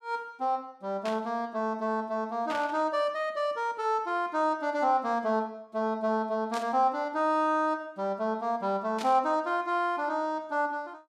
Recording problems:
burst of static; 4 times, first at 1 s; peak -5 dB vs average level

